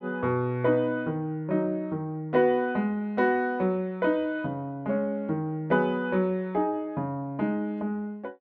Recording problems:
none

